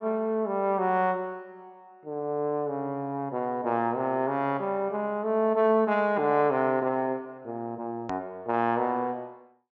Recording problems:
treble missing; nothing above 8 kHz
edit click; at 8 s

